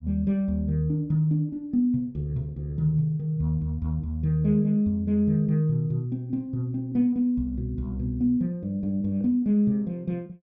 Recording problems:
none

